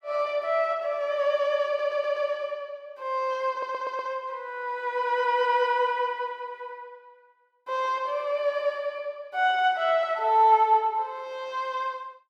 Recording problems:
stutter; at 1.5 s and at 3.5 s

